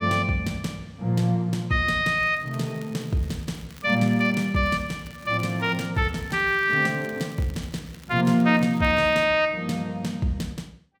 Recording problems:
crackling; from 2 to 6 s and from 6 to 9 s; loose cable, SNR 26 dB

